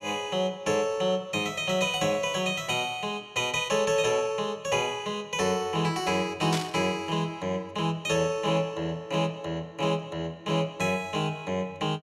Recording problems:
static burst; at 6.5 s; peak 0 dB vs average level

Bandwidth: 14 kHz